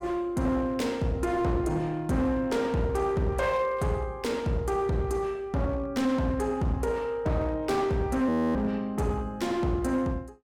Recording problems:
distortion; hard clipping, uneven, signal-to-distortion ratio 10 dB
audio freezing; at 8.5 s

